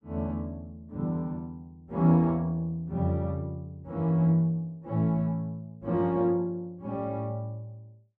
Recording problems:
none

